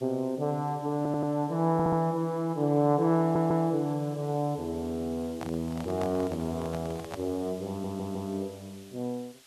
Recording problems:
hiss; slope +1 dB per octave, SNR 23 dB
stutter; 4 times, first at 1 s
microphone handling noise; from 5.5 to 7 s; peak -5 dB vs average level

